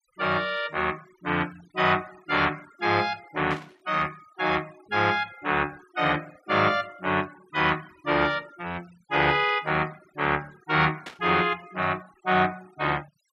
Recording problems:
denoising artefacts; signal-to-artefact ratio 22 dB
static burst; at 3.5 s and at 11 s; peak -8 dB vs average level

